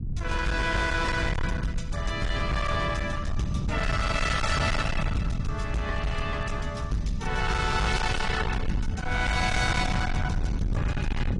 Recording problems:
lossy compression; AAC, log-spectral distance 3 dB, nothing above 10.4 kHz
distortion; hard clipping, signal-to-distortion ratio 6 dB
rumble; below 180 Hz, SNR 2 dB

